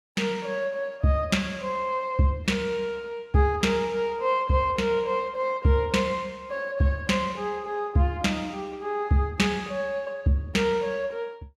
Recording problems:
none

